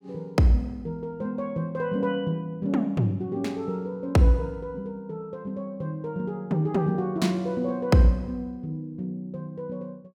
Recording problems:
none

